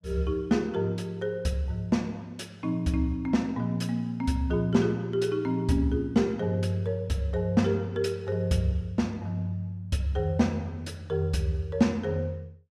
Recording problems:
none

